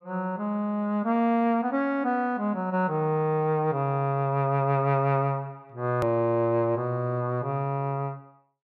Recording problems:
hard cut with a click; at 6 s

